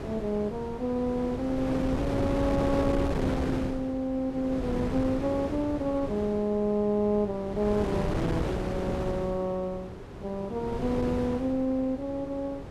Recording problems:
wind noise; below 490 Hz, SNR 4 dB

